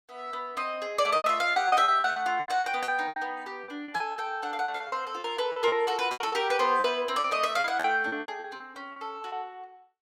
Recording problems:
packet loss; 15% of the sound replaced, filled with repeated pitch periods

